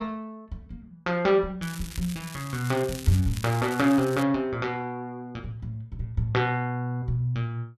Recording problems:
crackle; from 1.5 to 4 s; loose cable, SNR 14 dB

